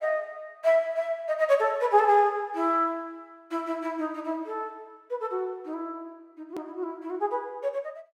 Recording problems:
edit click; at 6.5 s

